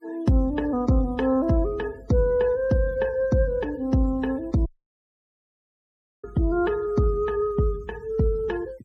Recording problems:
denoising artefacts; signal-to-artefact ratio 26 dB
dropout; at 4.5 s for 1.5 s

